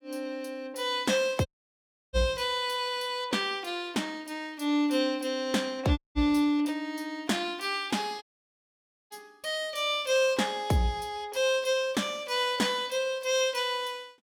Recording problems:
audio cutting out; at 1.5 s for 0.5 s, at 6 s and at 8 s for 1 s

